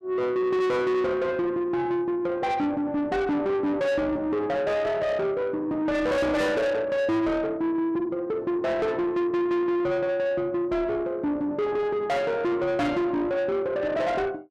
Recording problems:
distorted audio; soft clipping, signal-to-distortion ratio 8 dB

